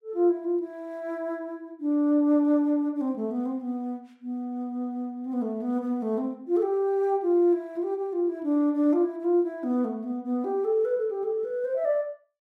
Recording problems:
none

